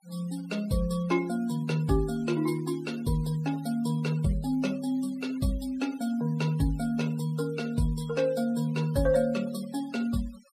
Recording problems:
denoising artefacts; signal-to-artefact ratio 20 dB

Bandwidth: 15 kHz